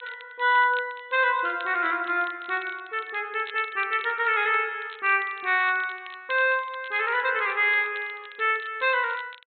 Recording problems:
treble cut off; nothing above 4 kHz
crackling; vinyl, SNR 23 dB

